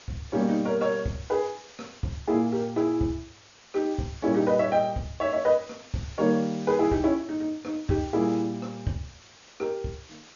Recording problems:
low-pass filter; nothing above 6.9 kHz
hiss; slope -1 dB per octave, SNR 21 dB

